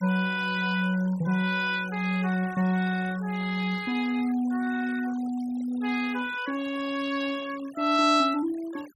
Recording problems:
noise reduction artefacts; signal-to-artefact ratio 19 dB

